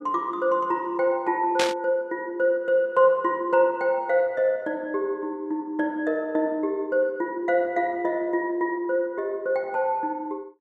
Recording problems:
static burst; at 1.5 s; peak +2 dB vs average level

